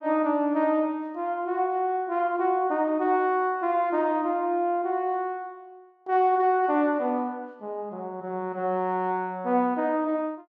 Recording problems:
none

